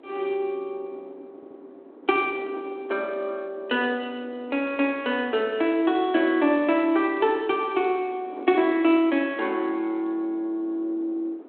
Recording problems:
phone line; 260 Hz to 3.5 kHz, G.726
wind noise; below 510 Hz, SNR 20 dB
audio stuttering; at 1.5 s

